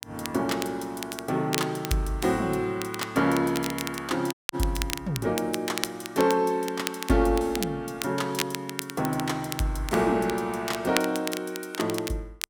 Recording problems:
crackle; vinyl, SNR 9 dB
dropout; at 4.5 s

